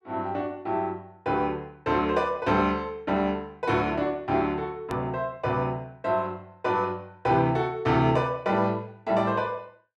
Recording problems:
click at an edit; at 5 s

